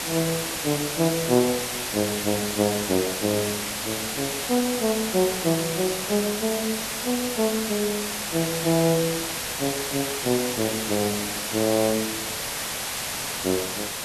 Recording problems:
hiss; slope -1 dB per octave, SNR 1 dB

